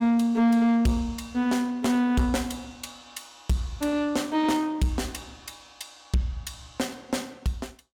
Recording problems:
distorted audio; soft clipping, signal-to-distortion ratio 12 dB

